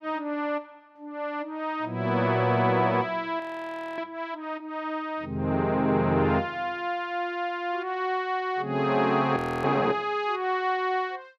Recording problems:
audio freezing; at 3.5 s for 0.5 s and at 9.5 s

